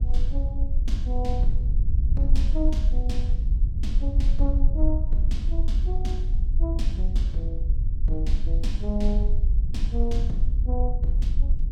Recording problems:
rumble; below 54 Hz, SNR -9 dB

